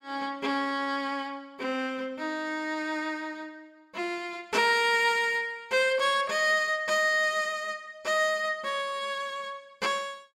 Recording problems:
none

